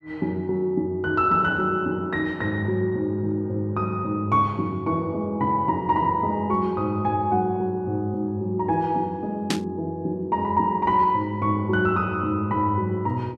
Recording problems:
burst of static; at 9.5 s; peak +1 dB vs average level

